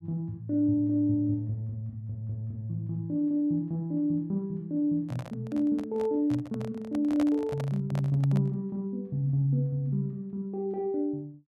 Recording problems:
handling noise; from 5 to 8.5 s; peak -2 dB vs average level

